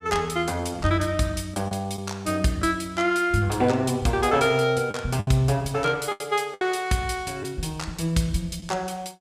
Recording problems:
lost packets; 4% of the sound replaced, filled with the last packet

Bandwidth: 15 kHz